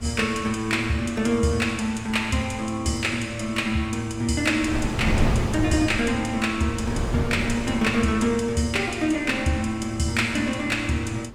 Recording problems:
wind noise; below 330 Hz, SNR 8 dB

